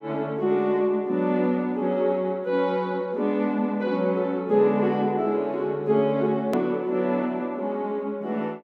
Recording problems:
hard cut with a click; at 6.5 s

